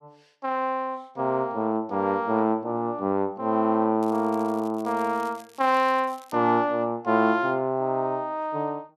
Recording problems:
crackling; from 4 to 6.5 s; loose cable, SNR 26 dB

